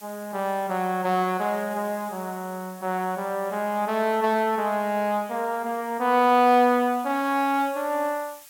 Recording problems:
background hiss; slope +2 dB per octave, SNR 22 dB

